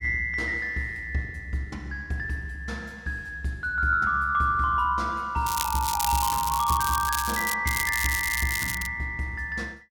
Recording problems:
crackle; from 5.5 to 7.5 s and from 7.5 to 9 s; loose cable, SNR 4 dB

